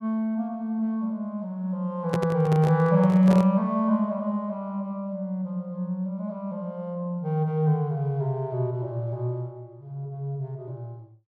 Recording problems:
handling noise; from 2 to 3.5 s; peak +1 dB vs average level

